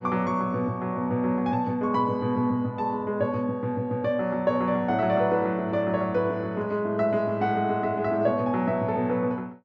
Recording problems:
treble missing; nothing above 7.8 kHz

